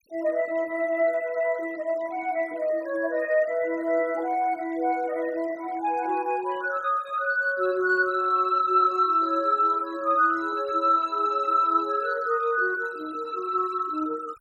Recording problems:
noise reduction artefacts; signal-to-artefact ratio 25 dB

